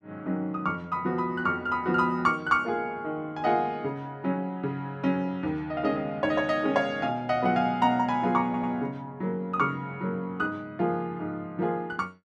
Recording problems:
audio stuttering; at 8.5 s

